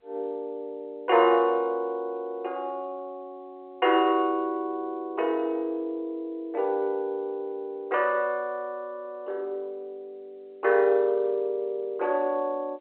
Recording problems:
telephone audio; 300 Hz to 3.2 kHz, G.711

